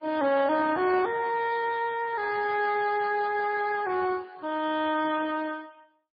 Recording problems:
lossy codec; Speex, then MP3, log-spectral distance 4 dB, nothing above 4.5 kHz

